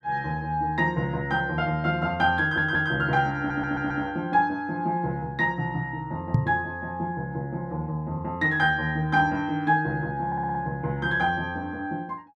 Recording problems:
audio stuttering; at 2.5 s, at 3.5 s and at 10 s
microphone thump; at 6.5 s; peak +8 dB vs average level

